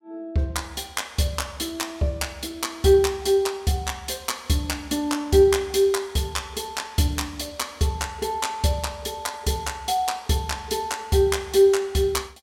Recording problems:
none

